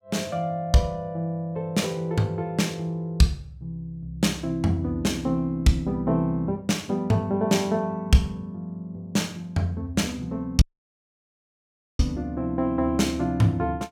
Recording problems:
dropout; at 11 s for 1.5 s

